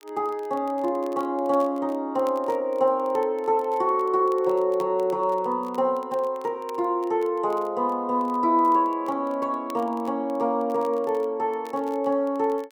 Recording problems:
crackle; vinyl, SNR 29 dB

